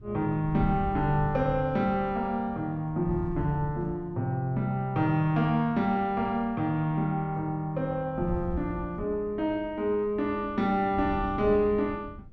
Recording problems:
wind noise; below 130 Hz, SNR 13 dB

